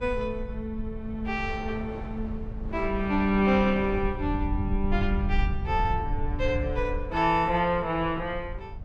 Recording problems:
low-frequency rumble; below 84 Hz, SNR 7 dB
wind on the microphone; below 810 Hz, SNR 20 dB

